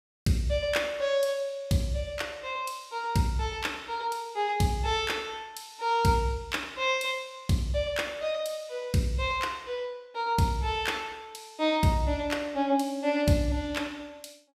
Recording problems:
none

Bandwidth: 15.5 kHz